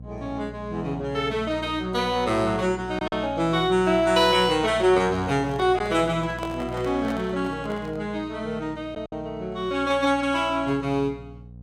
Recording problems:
electrical hum; 60 Hz, harmonics up to 540 Hz, SNR 17 dB
lost packets; 1.2% of the sound replaced, filled with silence
microphone handling noise; from 5 to 8 s; peak -6 dB vs average level

